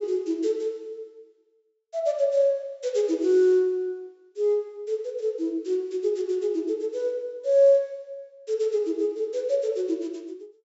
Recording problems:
low-pass filter; nothing above 8 kHz

